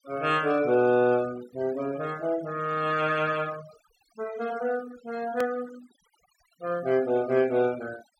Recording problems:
denoising artefacts; signal-to-artefact ratio 19 dB
click at an edit; at 5.5 s

